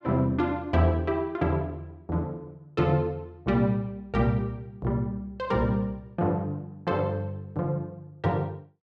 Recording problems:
none

